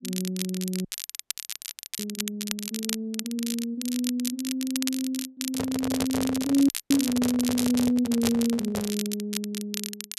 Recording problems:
crackling; vinyl, SNR 6 dB
audio cutting out; at 1 s for 1 s and at 6.5 s
microphone handling noise; from 5.5 to 9 s; peak 0 dB vs average level

